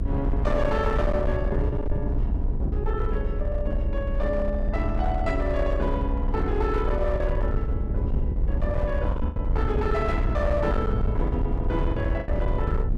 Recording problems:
distortion; hard clipping, uneven, signal-to-distortion ratio 11 dB
rumble; below 76 Hz, strongest tone 32 Hz, SNR -1 dB
wind on the microphone; below 300 Hz, SNR 16 dB
lost packets; 4% of the sound replaced, filled with the last packet

